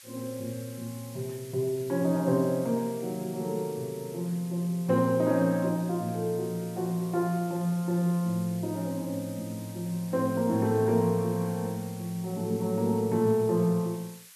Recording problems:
hiss; SNR 19 dB

